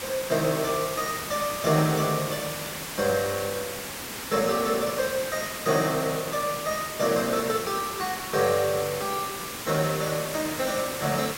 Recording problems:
background hiss; slope -2 dB per octave, SNR 6 dB

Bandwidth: 16 kHz